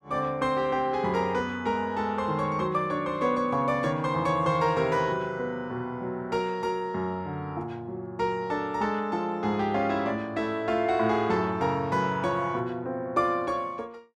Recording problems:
none

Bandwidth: 13.5 kHz